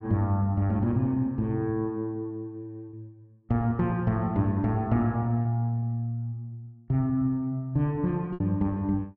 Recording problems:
packet loss; 2% of the sound replaced, filled with repeated pitch periods

